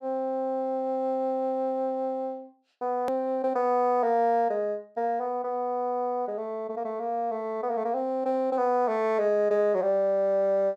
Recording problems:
edit click; at 3 s

